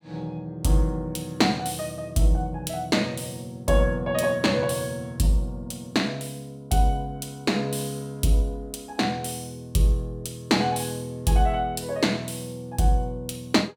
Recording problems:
none

